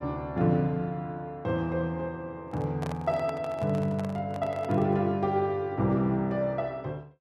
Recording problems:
microphone handling noise; from 2.5 to 5 s; peak -6 dB vs average level

